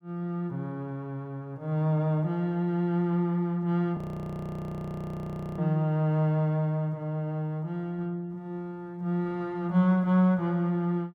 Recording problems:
audio freezing; at 4 s for 1.5 s

